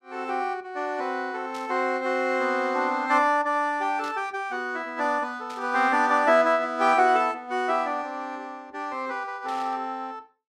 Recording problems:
burst of static; 4 times, first at 1.5 s; peak -13 dB vs average level

